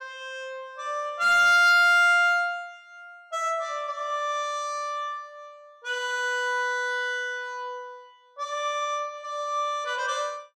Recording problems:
distorted audio; hard clipping, uneven, signal-to-distortion ratio 10 dB

